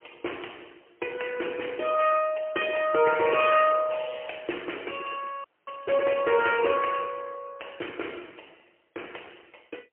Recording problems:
phone line; 280 Hz to 3.1 kHz, AMR-NB, then MP3
audio cutting out; at 5.5 s

